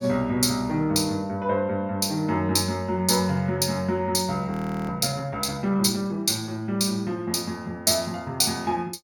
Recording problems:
audio freezing; at 4.5 s

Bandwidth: 17.5 kHz